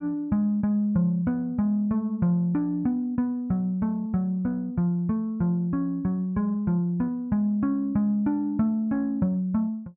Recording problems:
none

